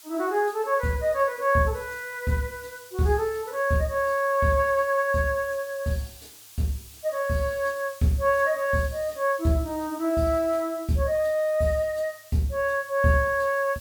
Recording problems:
hiss; slope +3 dB per octave, SNR 20 dB

